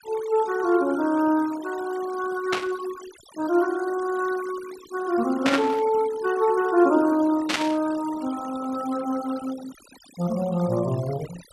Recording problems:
noise reduction artefacts; signal-to-artefact ratio 17 dB
burst of static; at 2.5 s, at 5.5 s and at 7.5 s; peak +4 dB vs average level

